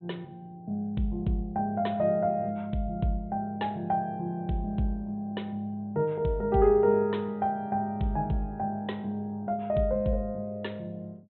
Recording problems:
treble cut off; nothing above 4 kHz

